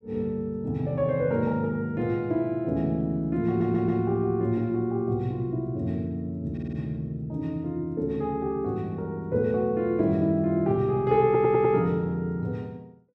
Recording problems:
audio stuttering; at 3.5 s, at 6.5 s and at 11 s

